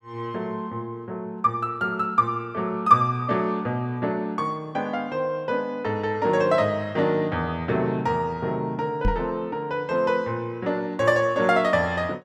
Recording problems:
microphone thump; at 9 s; peak +3 dB vs average level

